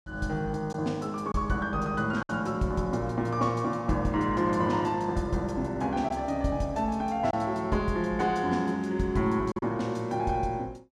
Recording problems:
lost packets; 1.8% of the sound replaced, filled with silence

